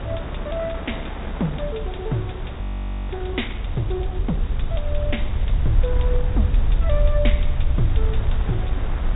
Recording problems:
low-pass filter; nothing above 4 kHz
background hiss; SNR 16 dB
low-frequency rumble; below 66 Hz, SNR -4 dB
wind on the microphone; below 980 Hz, SNR 7 dB
frozen audio; at 2.5 s

